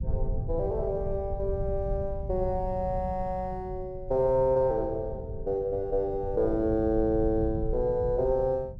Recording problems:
rumble; below 100 Hz, SNR 9 dB

